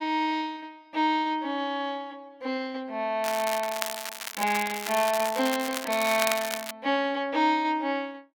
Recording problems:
crackle; from 3 to 6.5 s; loose cable, SNR 6 dB

